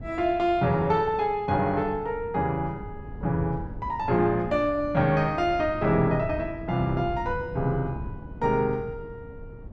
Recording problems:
wind on the microphone; below 180 Hz, SNR 14 dB

